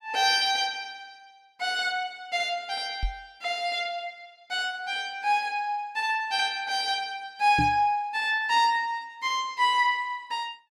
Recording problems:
knock on the microphone; at 3 s and at 7.5 s; peak +1 dB vs average level

